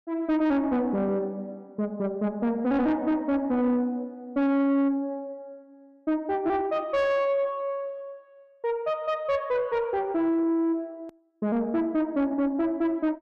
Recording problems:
distortion; soft clipping, signal-to-distortion ratio 11 dB
hard cut with a click; at 11 s

